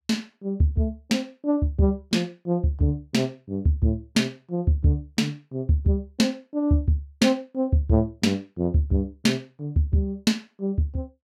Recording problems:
none

